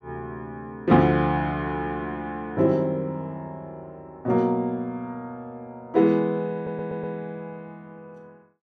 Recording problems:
stutter; at 6.5 s

